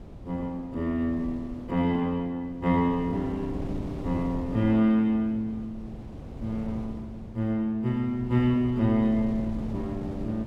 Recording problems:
wind on the microphone; below 270 Hz, SNR 12 dB

